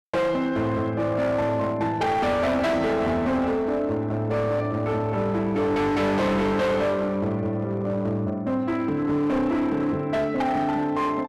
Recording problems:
distorted audio; hard clipping, signal-to-distortion ratio 8 dB

